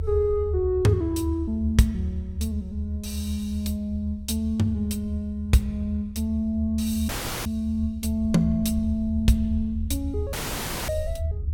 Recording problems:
rumble; below 80 Hz, strongest tone 78 Hz, SNR 5 dB
dropout; at 7 s and at 10 s for 0.5 s

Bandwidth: 17 kHz